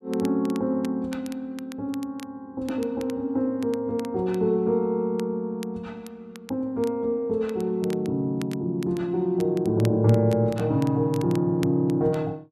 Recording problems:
crackling; vinyl, SNR 22 dB

